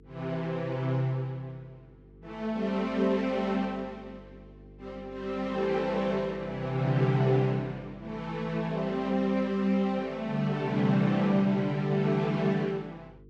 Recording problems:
electrical hum; 50 Hz, harmonics up to 450 Hz, SNR 24 dB

